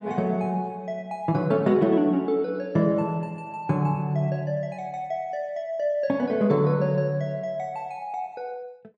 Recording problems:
none

